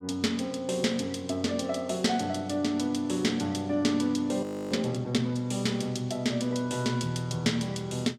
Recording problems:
frozen audio; at 4.5 s

